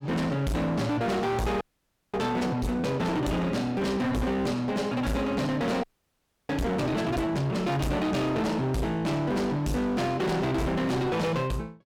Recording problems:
distortion; hard clipping, signal-to-distortion ratio 7 dB
audio freezing; at 1.5 s for 0.5 s and at 6 s for 0.5 s

